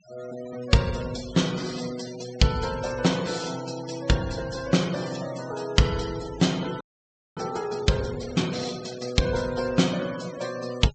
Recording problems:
low-pass filter; nothing above 8 kHz
denoising artefacts; signal-to-artefact ratio 15 dB
frozen audio; at 7 s for 0.5 s

